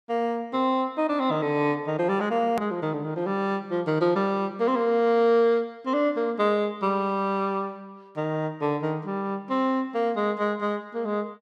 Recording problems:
click at an edit; at 2.5 s

